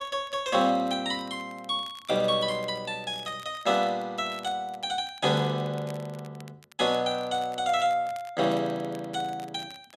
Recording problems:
crackle; vinyl, SNR 25 dB

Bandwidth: 13 kHz